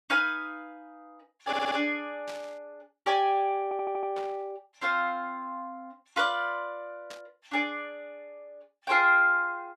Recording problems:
audio stuttering; at 1.5 s and at 3.5 s
burst of static; at 2.5 s, at 4 s and at 7 s; peak -12 dB vs average level

